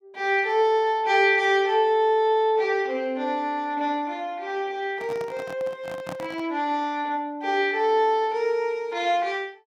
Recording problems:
handling noise; from 5 to 6.5 s; peak -8 dB vs average level

